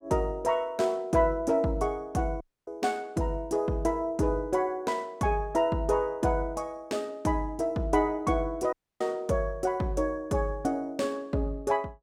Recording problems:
audio cutting out; at 2.5 s and at 8.5 s

